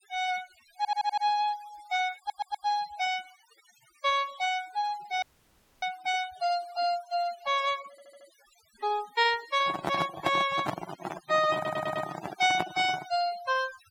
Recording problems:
noise reduction artefacts; signal-to-artefact ratio 16 dB
audio stuttering; 4 times, first at 1 s
dropout; at 5 s for 0.5 s
microphone handling noise; from 9.5 to 13 s; peak +4 dB vs average level

